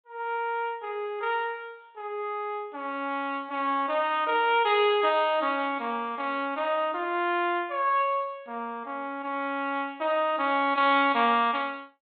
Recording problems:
treble cut off; nothing above 4 kHz

